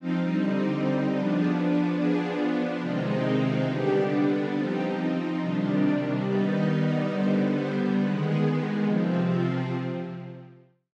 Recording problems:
none

